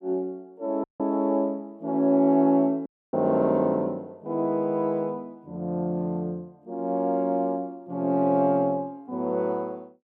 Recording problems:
audio cutting out; at 1 s and at 3 s

